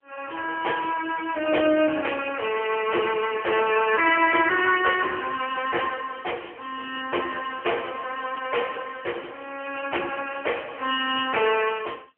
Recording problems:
phone line; 280 Hz to 3.1 kHz, AMR-NB

